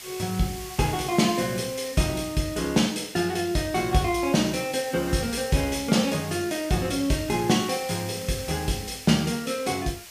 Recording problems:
hiss; slope +2 dB per octave, SNR 14 dB

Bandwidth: 15 kHz